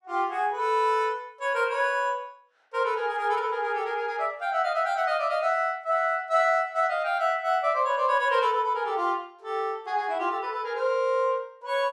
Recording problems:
none

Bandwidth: 14.5 kHz